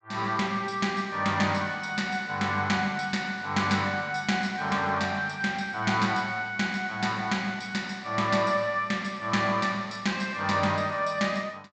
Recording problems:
low-pass filter; nothing above 8 kHz

